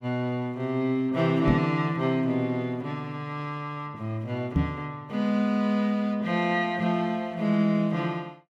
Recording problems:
microphone bump; at 1.5 s and at 4.5 s; peak +7 dB vs average level

